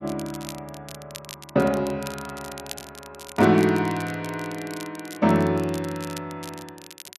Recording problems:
crackling; vinyl, SNR 17 dB

